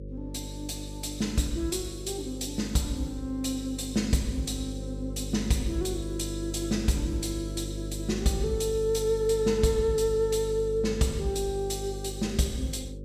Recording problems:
hum; 50 Hz, harmonics up to 550 Hz, SNR 8 dB

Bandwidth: 14.5 kHz